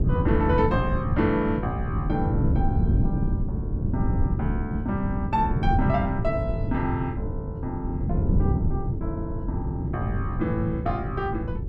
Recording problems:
wind noise; below 160 Hz, SNR -1 dB

